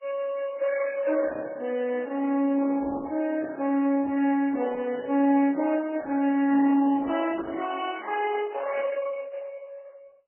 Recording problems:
codec artefacts; Opus, then MP3, log-spectral distance 3 dB, nothing above 2.5 kHz

